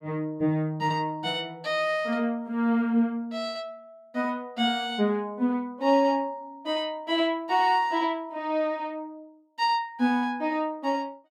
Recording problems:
none

